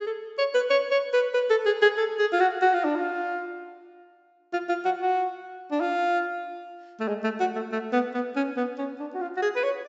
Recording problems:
treble cut off; nothing above 8 kHz

